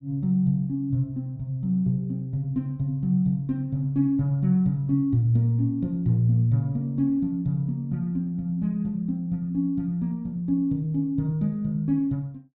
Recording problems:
none

